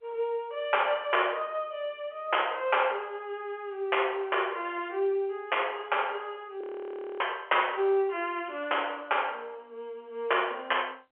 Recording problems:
telephone audio; 300 Hz to 3.3 kHz, G.711
frozen audio; at 6.5 s for 0.5 s

